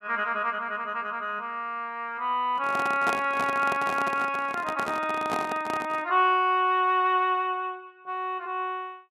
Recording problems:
handling noise; from 2.5 to 6 s; peak +1 dB vs average level

